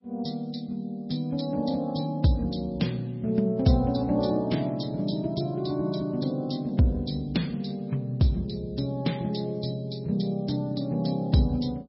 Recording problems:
lossy compression; MP3, log-spectral distance 4 dB, nothing above 5.5 kHz

